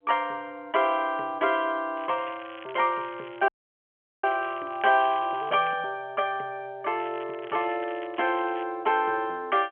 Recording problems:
telephone audio; 280 Hz to 3.3 kHz, G.711
crackling; from 2 to 5.5 s and from 7 to 8.5 s; loose cable, SNR 21 dB
dropout; at 3.5 s for 1 s

